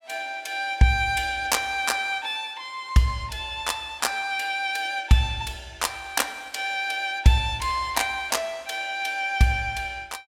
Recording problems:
none

